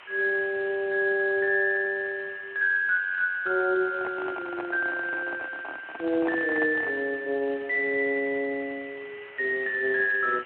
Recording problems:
telephone audio; 300 Hz to 3.8 kHz, Speex
hiss; SNR 21 dB
handling noise; from 4 to 7 s; peak -3 dB vs average level

